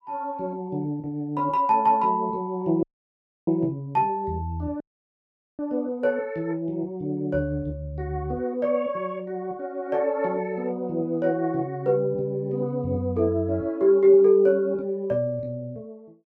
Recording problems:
audio cutting out; at 3 s for 0.5 s and at 5 s for 1 s

